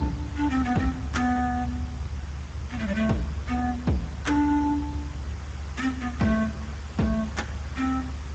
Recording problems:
codec artefacts; Speex, log-spectral distance 3 dB, nothing above 7.8 kHz
background hiss; slope -4 dB per octave, SNR 17 dB
rumble; below 100 Hz, strongest tone 72 Hz, SNR 8 dB

